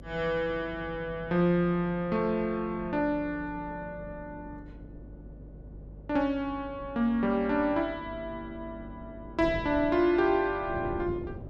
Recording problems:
electrical hum; 50 Hz, harmonics up to 600 Hz, SNR 20 dB
wind on the microphone; below 320 Hz, SNR 18 dB

